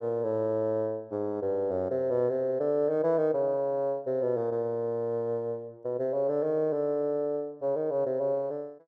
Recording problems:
none

